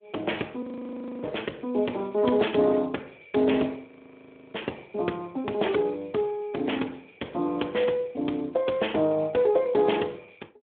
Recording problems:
telephone audio; 220 Hz to 3.6 kHz, Speex
audio freezing; at 0.5 s for 0.5 s and at 4 s for 0.5 s

